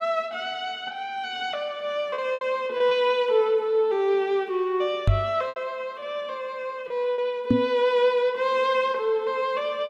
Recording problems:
packet loss; 4% of the sound replaced, filled with repeated pitch periods
knock on the microphone; at 5 s and at 7.5 s; peak +8 dB vs average level

